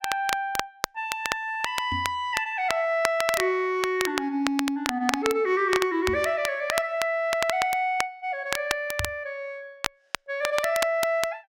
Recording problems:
crackling; vinyl, SNR 6 dB
knock on the microphone; at 2 s, at 6 s and at 9 s; peak -3 dB vs average level

